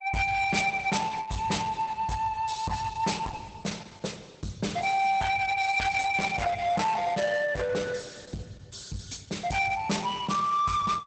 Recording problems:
codec artefacts; Opus, log-spectral distance 5 dB, nothing above 8 kHz
distortion; hard clipping, signal-to-distortion ratio 10 dB

